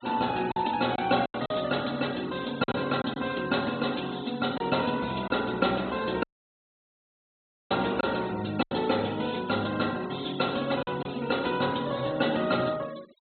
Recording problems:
low-pass filter; nothing above 4.1 kHz
denoising artefacts; signal-to-artefact ratio 18 dB
packet loss; 4% of the sound replaced, filled with silence
audio cutting out; at 6 s for 1.5 s

